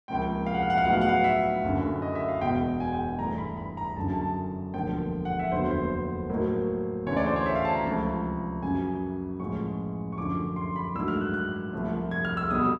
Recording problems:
none

